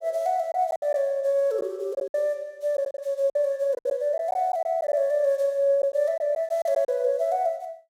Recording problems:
packet loss; 8% of the sound replaced, filled with silence

